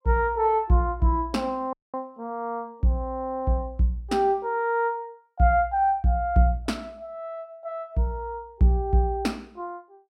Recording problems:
audio cutting out; at 1.5 s

